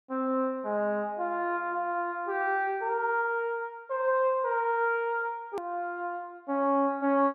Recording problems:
edit click; at 5.5 s

